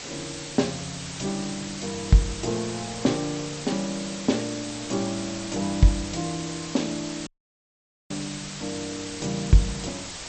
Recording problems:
lossy compression; MP2, log-spectral distance 17 dB, nothing above 7.8 kHz
mains hum; 60 Hz, harmonics up to 2 kHz, SNR 30 dB
background hiss; slope +1 dB per octave, SNR 8 dB
wind on the microphone; below 1.4 kHz, SNR 20 dB
dropout; at 7.5 s for 1 s

